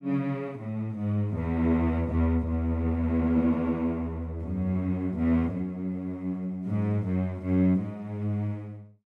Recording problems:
none

